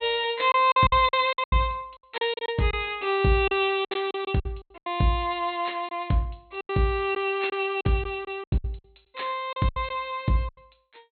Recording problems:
low-pass filter; nothing above 4.2 kHz
lost packets; 12% of the sound replaced, filled with silence

